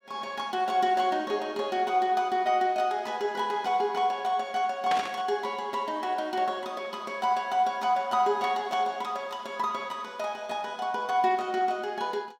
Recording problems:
burst of static; at 5 s; peak 0 dB vs average level

